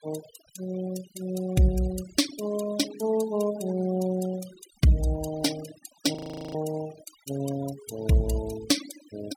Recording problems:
noise reduction artefacts; signal-to-artefact ratio 13 dB
audio freezing; at 6 s

